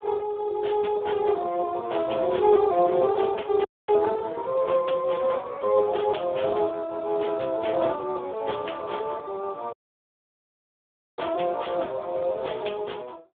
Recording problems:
telephone audio; 320 Hz to 3.6 kHz, Speex
audio cutting out; at 3.5 s and at 9.5 s for 1.5 s

